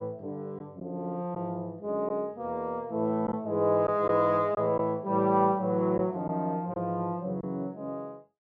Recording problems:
lost packets; 2% of the sound replaced, filled with silence

